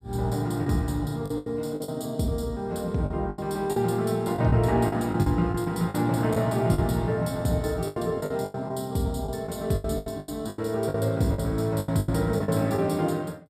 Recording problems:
packet loss; 12% of the sound replaced, filled with the last packet

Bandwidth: 15 kHz